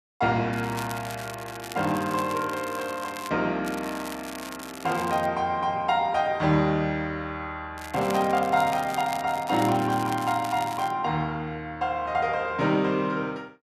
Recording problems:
crackle; from 0.5 to 3.5 s, from 3.5 to 5.5 s and from 8 to 11 s; loose cable, SNR 15 dB

